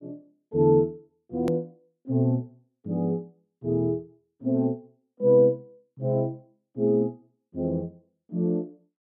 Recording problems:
edit click; at 1.5 s

